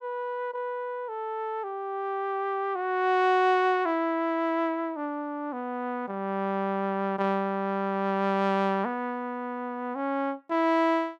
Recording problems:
none

